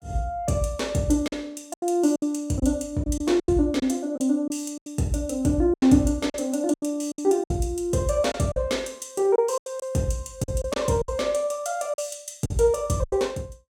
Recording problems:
lost packets; 9% of the sound replaced, filled with silence

